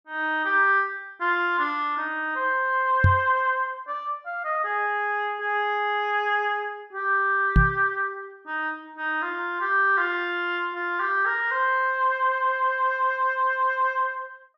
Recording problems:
microphone thump; at 3 s and at 7.5 s; peak +8 dB vs average level

